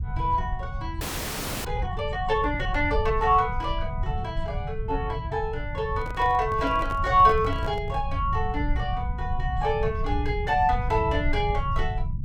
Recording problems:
rumble; below 98 Hz, SNR 6 dB
frozen audio; at 1 s for 0.5 s
microphone handling noise; from 6 to 8 s; peak -8 dB vs average level

